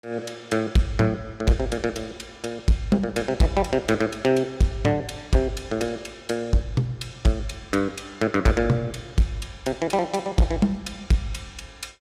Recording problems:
distorted audio; hard clipping, signal-to-distortion ratio 11 dB

